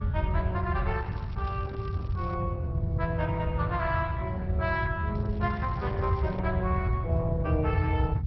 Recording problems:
treble missing; nothing above 4.9 kHz
codec artefacts; Opus, log-spectral distance 2 dB
rumble; below 110 Hz, SNR -4 dB
crackling; from 1 to 2.5 s and from 5 to 6.5 s; loose cable, SNR 25 dB

